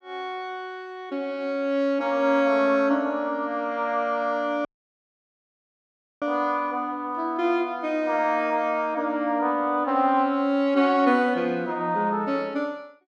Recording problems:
dropout; at 4.5 s for 1.5 s

